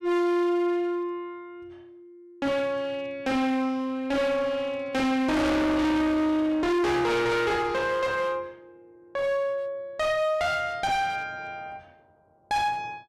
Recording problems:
distorted audio; hard clipping, uneven, signal-to-distortion ratio 4 dB

